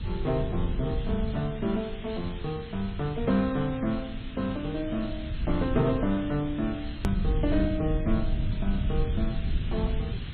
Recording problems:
lossy codec; MP3, then MP2, log-spectral distance 5 dB, nothing above 13.1 kHz
hiss; SNR 16 dB
low-frequency rumble; below 100 Hz, SNR 4 dB
click at an edit; at 7 s

